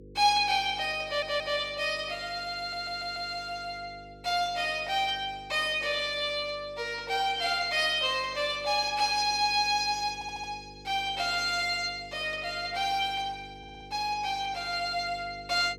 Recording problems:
electrical hum; 50 Hz, harmonics up to 500 Hz, SNR 22 dB
audio stuttering; 4 times, first at 1 s

